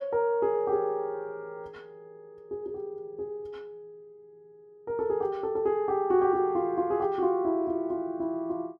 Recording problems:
none

